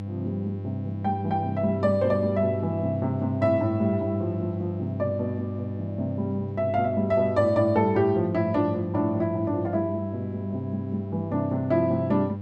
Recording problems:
electrical hum; 50 Hz, harmonics up to 800 Hz, SNR 7 dB

